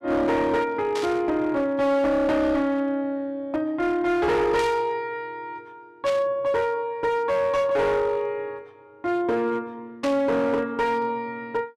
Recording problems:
distortion; hard clipping, signal-to-distortion ratio 11 dB
static burst; 4 times, first at 1 s; peak -5 dB vs average level

